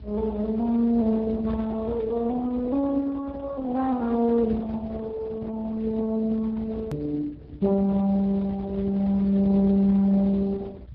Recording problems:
low-pass filter; nothing above 5.5 kHz
lossy codec; Speex, then Opus, log-spectral distance 3 dB
rumble; below 110 Hz, strongest tone 60 Hz, SNR 13 dB
click at an edit; at 7 s

